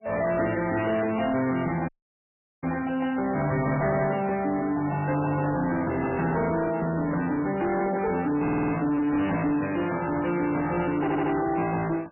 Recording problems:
lossy compression; MP3, log-spectral distance 4 dB, nothing above 2.9 kHz
distortion; soft clipping, signal-to-distortion ratio 11 dB
audio cutting out; at 2 s for 0.5 s
microphone handling noise; from 5.5 to 9.5 s; peak -8 dB vs average level
audio stuttering; at 8.5 s and at 11 s

